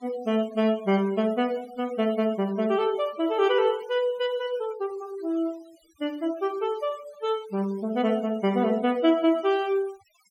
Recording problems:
denoising artefacts; signal-to-artefact ratio 22 dB

